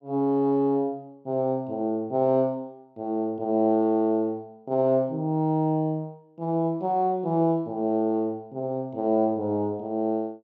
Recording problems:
none

